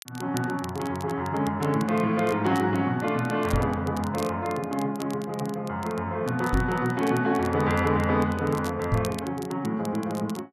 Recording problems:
crackle; vinyl, SNR 19 dB
microphone bump; at 3.5 s, at 6.5 s and at 9 s; peak +4 dB vs average level

